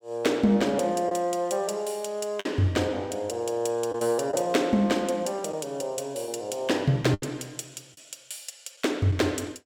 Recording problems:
lost packets; 3% of the sound replaced, filled with the last packet

